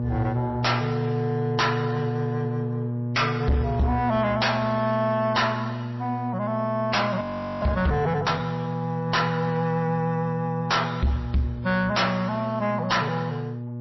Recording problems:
lossy compression; MP3, log-spectral distance 2 dB, nothing above 5.7 kHz
distorted audio; soft clipping, signal-to-distortion ratio 10 dB
hum; 60 Hz, harmonics up to 840 Hz, SNR 6 dB
audio freezing; at 7 s

